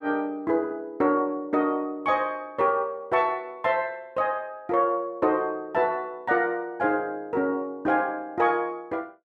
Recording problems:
none

